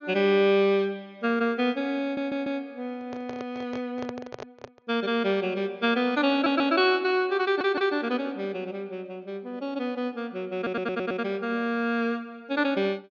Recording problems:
treble missing; nothing above 6.6 kHz
audio stuttering; 4 times, first at 2 s
handling noise; from 3 to 5 s; peak -6 dB vs average level

